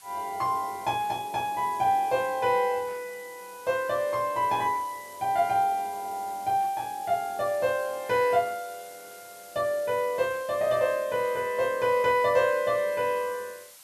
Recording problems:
hiss; SNR 20 dB

